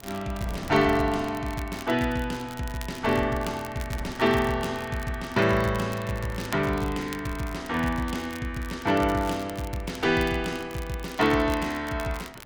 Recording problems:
wind on the microphone; below 530 Hz, SNR 20 dB
crackling; vinyl, SNR 18 dB

